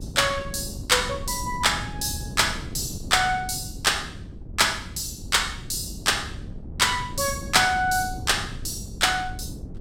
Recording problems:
wind noise; below 200 Hz, SNR 13 dB

